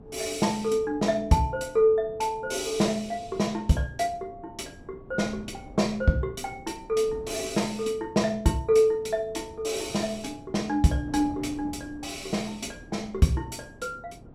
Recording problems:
wind on the microphone; below 340 Hz, SNR 19 dB

